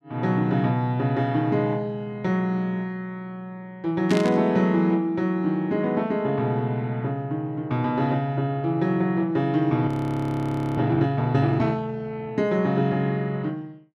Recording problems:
burst of static; at 4 s; peak -4 dB vs average level
audio freezing; at 10 s for 1 s

